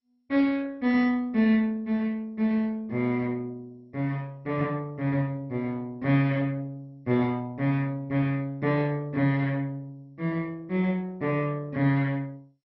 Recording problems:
lossy compression; MP2, log-spectral distance 2 dB, nothing above 5.3 kHz

